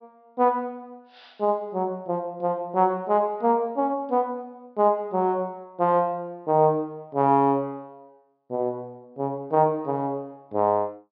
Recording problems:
treble cut off; nothing above 5.5 kHz

